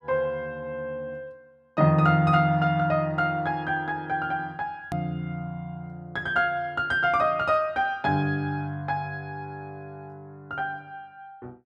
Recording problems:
edit click; at 5 s

